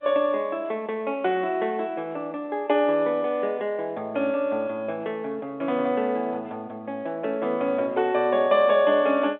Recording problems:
phone line; 240 Hz to 3.9 kHz, G.711

